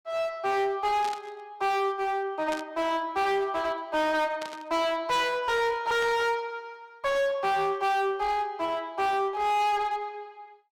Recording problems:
distortion; hard clipping, uneven, signal-to-distortion ratio 7 dB
burst of static; 4 times, first at 1 s; peak -6 dB vs average level

